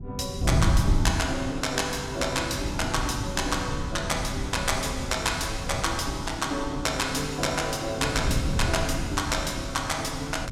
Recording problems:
wind on the microphone; below 140 Hz, SNR 4 dB

